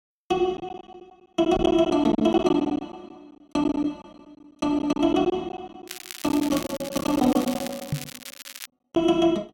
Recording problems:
packet loss; 13% of the sound replaced, filled with silence
microphone bump; at 1.5 s and at 8 s; peak 0 dB vs average level
crackling; from 6 to 8.5 s; loose cable, SNR 13 dB

